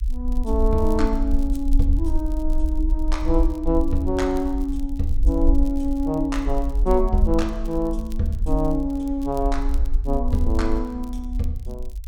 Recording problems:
rumble; below 48 Hz, SNR 2 dB
crackling; vinyl, SNR 27 dB

